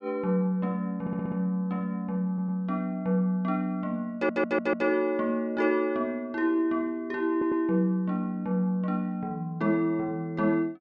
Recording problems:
audio stuttering; 4 times, first at 1 s

